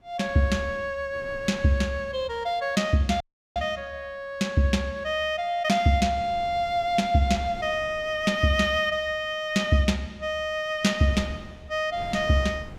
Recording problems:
wind on the microphone; below 450 Hz, SNR 21 dB
audio cutting out; at 3 s

